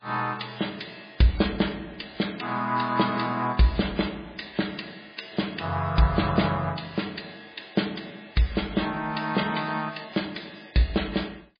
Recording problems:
lossy codec; MP3, log-spectral distance 8 dB, nothing above 4.6 kHz

